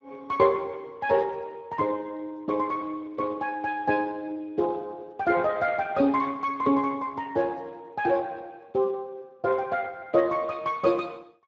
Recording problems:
lossy compression; Speex, log-spectral distance 3 dB

